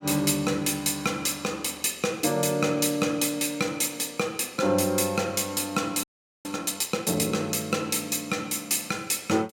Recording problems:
audio freezing; at 6 s

